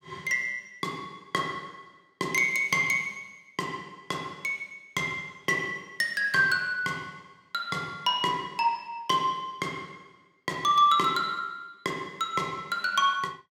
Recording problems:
none

